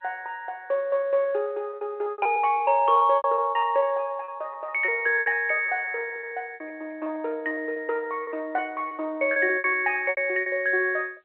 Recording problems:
phone line; 320 Hz to 3.1 kHz, G.711
packet loss; 15% of the sound replaced, filled with repeated pitch periods

